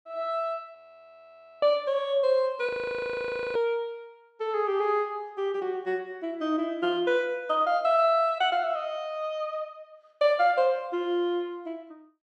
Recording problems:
frozen audio; at 1 s for 1 s and at 2.5 s for 1 s

